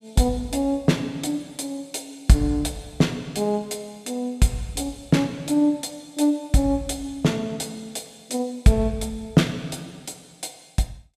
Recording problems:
none

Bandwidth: 15 kHz